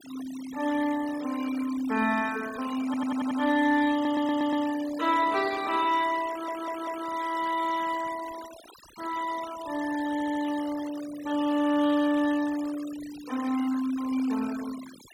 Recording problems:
denoising artefacts; signal-to-artefact ratio 16 dB
stutter; 4 times, first at 3 s

